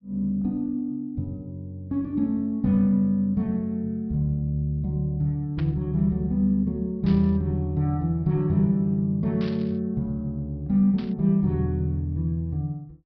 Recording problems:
low-pass filter; nothing above 5.5 kHz
burst of static; 4 times, first at 5.5 s; peak -12 dB vs average level

